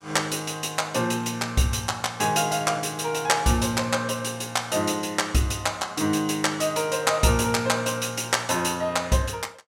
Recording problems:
none

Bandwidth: 16 kHz